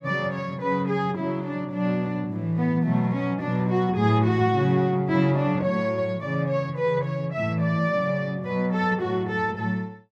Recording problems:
none

